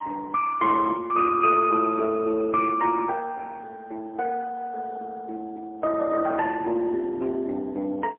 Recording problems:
telephone audio; 300 Hz to 2.3 kHz, AMR-NB, then MP3

